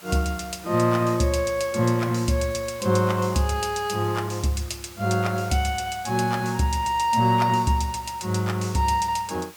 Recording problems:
hiss; SNR 20 dB

